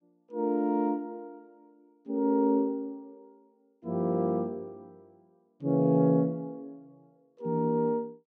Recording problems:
none

